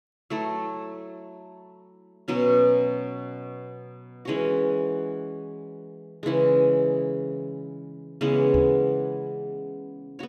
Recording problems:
microphone thump; at 8.5 s; peak -1 dB vs average level

